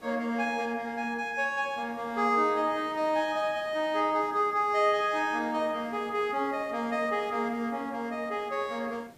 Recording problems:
hiss; slope -6 dB per octave, SNR 25 dB

